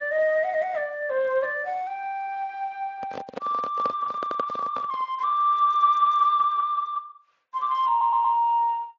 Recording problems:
lossy codec; MP3, then Speex, log-spectral distance 2 dB
handling noise; from 3 to 5 s; peak -5 dB vs average level
audio stuttering; at 4 s and at 8 s

